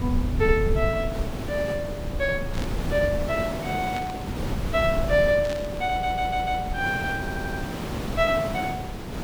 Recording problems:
hiss; slope -6 dB per octave, SNR 7 dB
rumble; below 94 Hz, SNR 8 dB
burst of static; at 2.5 s, at 4 s and at 5.5 s; peak -8 dB vs average level
stutter; at 6 s and at 7 s

